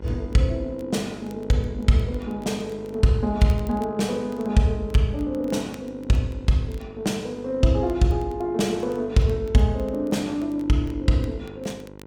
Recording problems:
electrical hum; 50 Hz, harmonics up to 1.6 kHz, SNR 17 dB
crackle; vinyl, SNR 30 dB

